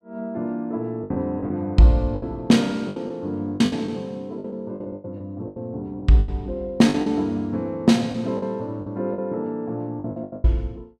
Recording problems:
packet loss; 12% of the sound replaced, filled with the last packet

